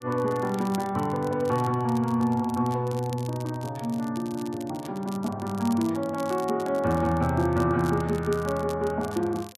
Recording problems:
crackling; vinyl, SNR 20 dB

